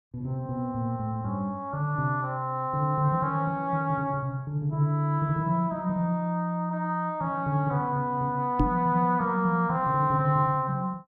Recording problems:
knock on the microphone; at 8.5 s; peak +6 dB vs average level

